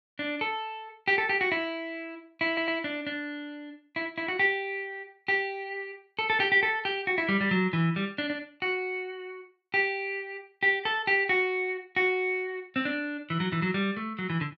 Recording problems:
stutter; at 2.5 s

